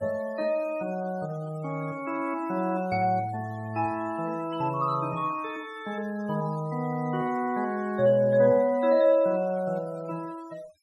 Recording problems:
denoising artefacts; signal-to-artefact ratio 25 dB

